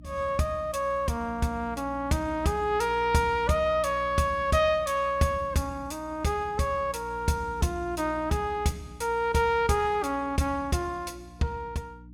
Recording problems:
hum; 60 Hz, harmonics up to 300 Hz, SNR 18 dB

